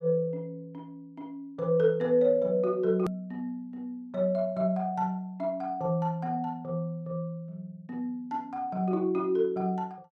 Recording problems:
click at an edit; at 3 s

